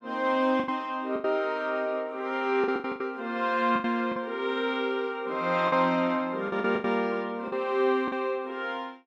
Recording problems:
lost packets; 9% of the sound replaced, filled with the last packet

